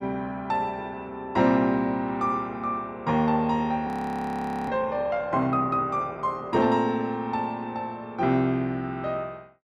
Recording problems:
audio freezing; at 4 s for 1 s

